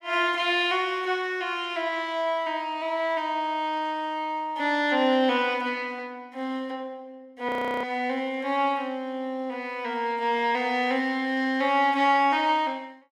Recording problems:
frozen audio; at 7.5 s

